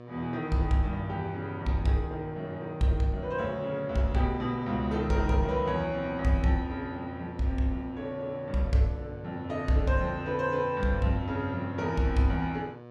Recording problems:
electrical hum; 60 Hz, harmonics up to 1.9 kHz, SNR 17 dB

